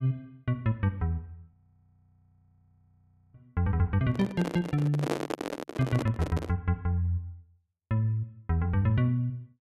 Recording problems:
frozen audio; at 1.5 s for 2 s
handling noise; from 4 to 6.5 s; peak +3 dB vs average level

